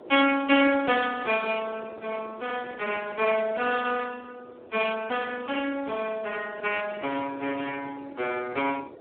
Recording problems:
telephone audio; 300 Hz to 3.2 kHz, Speex
wind noise; below 590 Hz, SNR 19 dB

